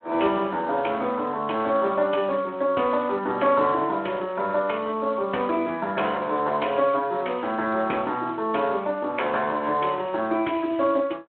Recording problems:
telephone audio; 280 Hz to 3.3 kHz, Speex

